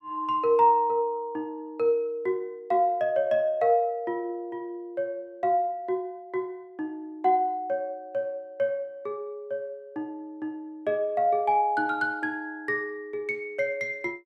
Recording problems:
none

